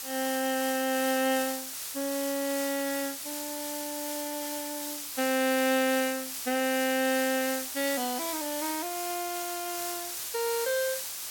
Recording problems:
background hiss; slope +2 dB per octave, SNR 4 dB

